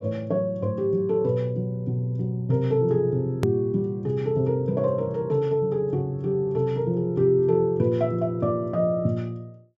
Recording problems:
treble cut off; nothing above 8 kHz
edit click; at 3.5 s

